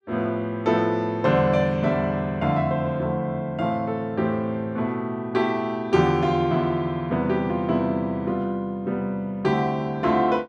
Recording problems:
none

